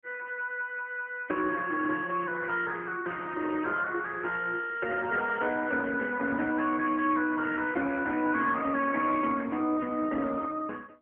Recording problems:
telephone audio; 260 Hz to 2.8 kHz, AMR-NB

